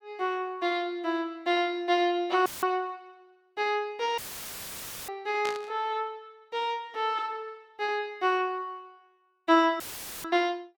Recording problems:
dropout; at 2.5 s, at 4 s for 1 s and at 10 s; filled with static
burst of static; at 5.5 s; peak -4 dB vs average level

